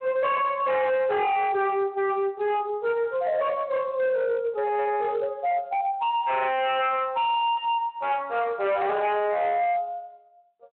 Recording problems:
phone line; 300 Hz to 3.7 kHz, Speex
distortion; hard clipping, signal-to-distortion ratio 6 dB

